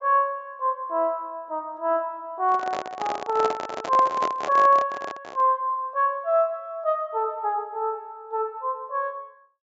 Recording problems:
low-pass filter; nothing above 8 kHz
microphone handling noise; from 2.5 to 5.5 s; peak 0 dB vs average level

